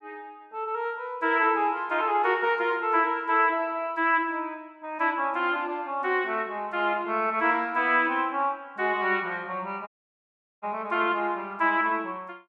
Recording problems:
audio cutting out; at 10 s for 1 s

